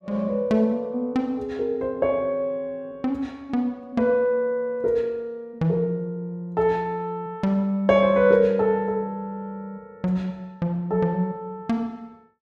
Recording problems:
none

